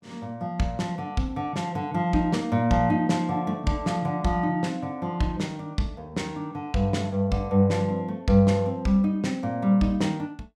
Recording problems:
none

